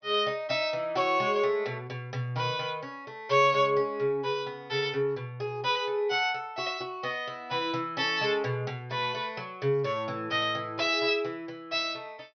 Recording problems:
low-pass filter; nothing above 6 kHz

